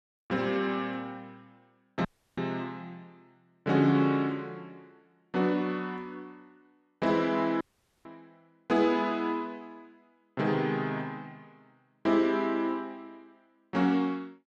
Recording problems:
audio cutting out; at 2 s and at 7.5 s

